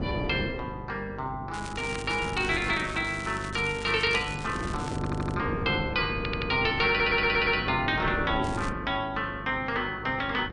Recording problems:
codec artefacts; MP3, log-spectral distance 3 dB
electrical hum; 50 Hz, harmonics up to 900 Hz, SNR 14 dB
wind noise; below 400 Hz, SNR 10 dB
crackling; from 1.5 to 5.5 s and at 8.5 s; loose cable, SNR 15 dB
stutter; at 5 s, at 6 s and at 7 s

